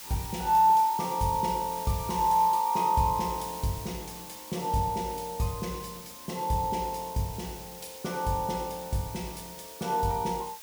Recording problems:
background hiss; slope +2 dB per octave, SNR 14 dB

